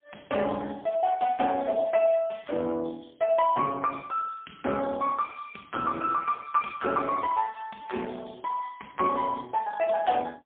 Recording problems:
telephone audio; 300 Hz to 3.4 kHz, AMR-NB, then MP3

